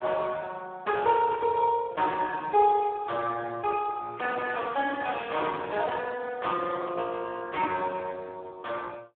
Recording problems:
telephone audio; 190 Hz to 2.2 kHz, Speex

